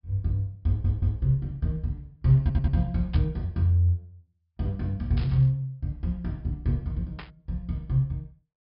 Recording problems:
treble cut off; nothing above 5.5 kHz
audio stuttering; at 0.5 s and at 2.5 s
burst of static; at 3 s, at 5 s and at 7 s; peak -10 dB vs average level

